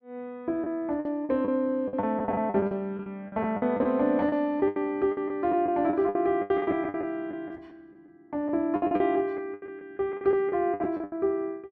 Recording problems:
packet loss; 16% of the sound replaced, filled with the last packet

